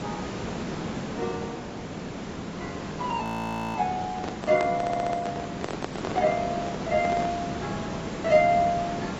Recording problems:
lossy compression; AAC, log-spectral distance 7 dB, nothing above 14.6 kHz
hiss; slope -6 dB per octave, SNR 7 dB
audio freezing; at 3 s for 0.5 s
handling noise; from 4 to 7.5 s; peak 0 dB vs average level
audio stuttering; at 5 s

